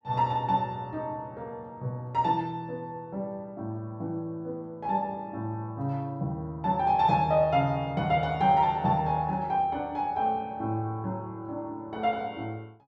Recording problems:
none

